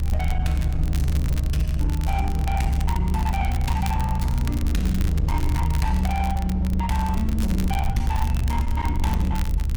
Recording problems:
distortion; hard clipping, uneven, signal-to-distortion ratio 10 dB
rumble; below 74 Hz, strongest tone 70 Hz, SNR -3 dB
crackling; vinyl, SNR 13 dB

